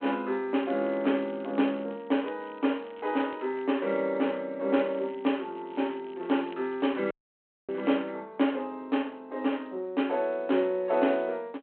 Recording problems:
phone line; 220 Hz to 3.3 kHz, G.726
crackling; from 0.5 to 4 s and from 5 to 8 s; loose cable, SNR 27 dB
dropout; at 7 s for 0.5 s

